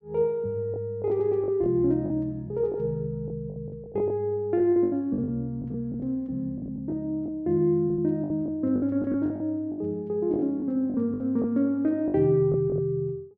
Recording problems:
packet loss; 11% of the sound replaced, filled with the last packet

